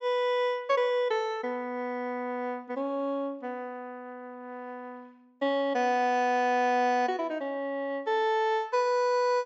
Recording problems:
low-pass filter; nothing above 8 kHz

